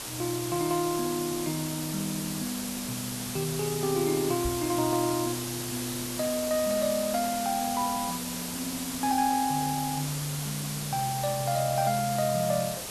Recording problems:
background hiss; slope -1 dB per octave, SNR 4 dB
microphone bump; at 4.5 s; peak -2 dB vs average level

